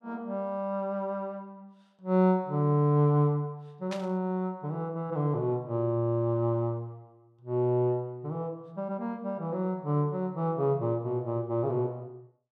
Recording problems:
static burst; at 4 s; peak -7 dB vs average level

